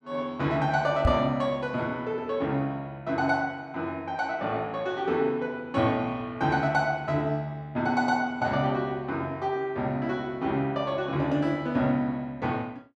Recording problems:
knock on the microphone; at 1 s; peak +7 dB vs average level

